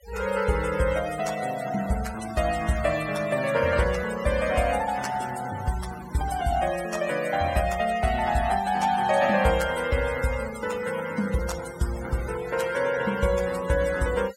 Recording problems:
noise reduction artefacts; signal-to-artefact ratio 14 dB

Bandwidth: 16 kHz